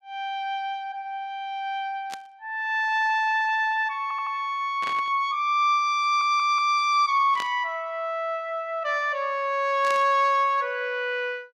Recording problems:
burst of static; 4 times, first at 2 s; peak -7 dB vs average level
stutter; at 4 s and at 6 s

